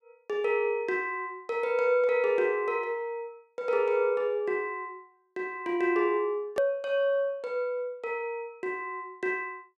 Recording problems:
hard cut with a click; at 6.5 s

